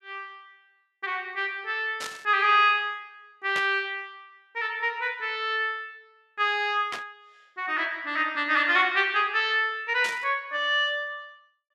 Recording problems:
burst of static; 4 times, first at 2 s; peak -5 dB vs average level

